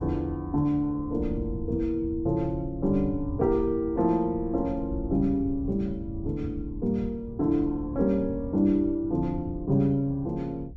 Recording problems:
low-frequency rumble; below 110 Hz, SNR 12 dB

